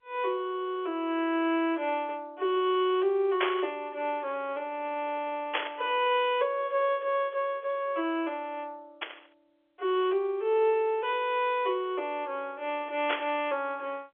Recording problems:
telephone audio; 300 Hz to 3.4 kHz, G.711
burst of static; 4 times, first at 3.5 s; peak +4 dB vs average level

